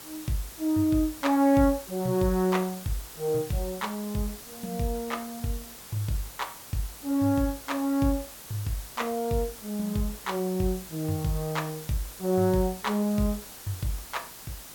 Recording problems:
hiss; slope -2 dB per octave, SNR 13 dB

